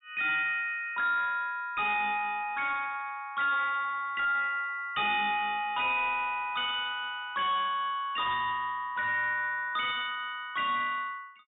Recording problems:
treble missing; nothing above 4 kHz
distorted audio; soft clipping, signal-to-distortion ratio 10 dB

